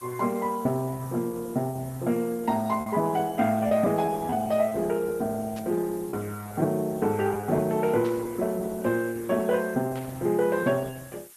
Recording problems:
lossy codec; Opus, log-spectral distance 6 dB
hiss; SNR 20 dB
packet loss; 3% of the sound replaced, filled with repeated pitch periods
static burst; at 5.5 s, at 8 s and at 10 s; peak -13 dB vs average level

